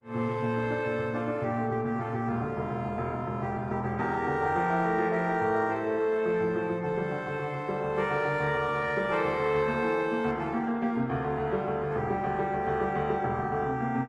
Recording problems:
codec artefacts; Opus, log-spectral distance 2 dB

